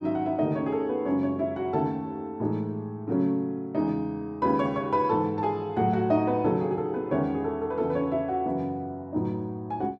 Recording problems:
none

